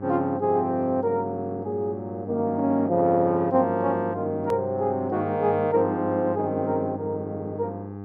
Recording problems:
hum; 50 Hz, harmonics up to 1.3 kHz, SNR 12 dB
click at an edit; at 4.5 s

